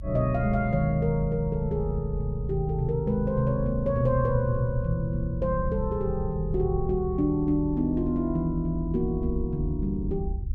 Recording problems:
rumble; below 72 Hz, SNR 8 dB

